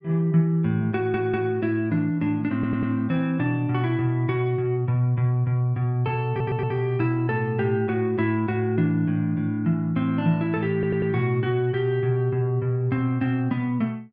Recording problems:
audio stuttering; 4 times, first at 1 s

